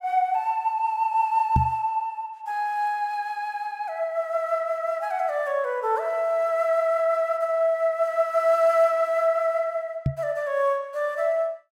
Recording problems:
microphone bump; at 1.5 s and at 10 s; peak +5 dB vs average level

